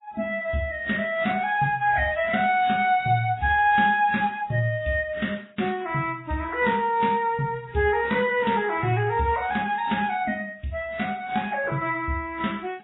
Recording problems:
lossy compression; AAC, then MP3, log-spectral distance 3 dB, nothing above 3.8 kHz

